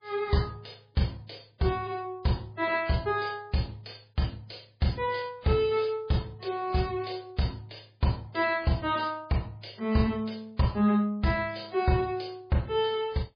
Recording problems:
lossy codec; MP3, log-spectral distance 5 dB, nothing above 5 kHz

